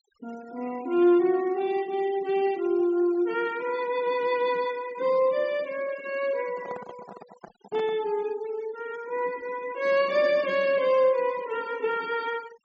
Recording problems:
low-pass filter; nothing above 7.7 kHz
noise reduction artefacts; signal-to-artefact ratio 22 dB
microphone handling noise; from 6.5 to 8 s; peak -10 dB vs average level

